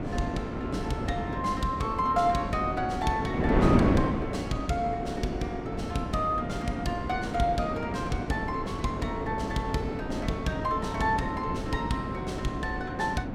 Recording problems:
wind noise; below 450 Hz, SNR 1 dB

